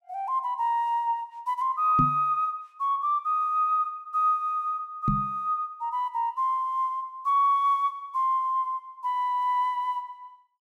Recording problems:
microphone thump; at 2 s and at 5 s; peak +3 dB vs average level

